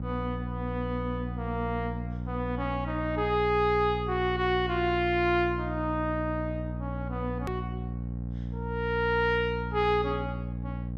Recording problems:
hum; 60 Hz, harmonics up to 540 Hz, SNR 5 dB
edit click; at 7.5 s

